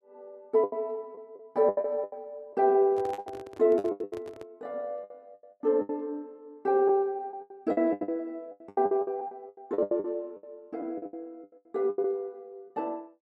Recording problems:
packet loss; 17% of the sound replaced, filled with the last packet
microphone handling noise; from 3 to 4.5 s; peak -9 dB vs average level

